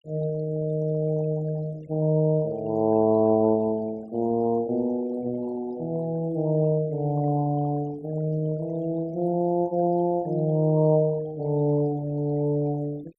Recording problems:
denoising artefacts; signal-to-artefact ratio 23 dB

